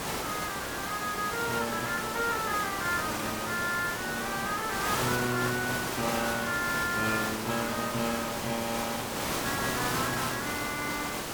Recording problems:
hiss; slope -4 dB per octave, SNR 1 dB

